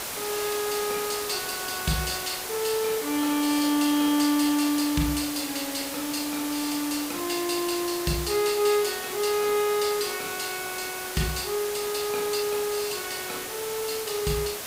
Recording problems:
background hiss; slope -2 dB per octave, SNR 5 dB

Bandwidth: 15.5 kHz